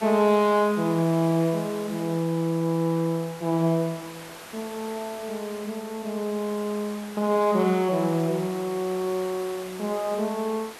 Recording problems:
hiss; SNR 16 dB

